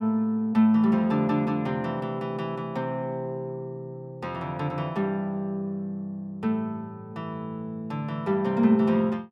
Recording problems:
none

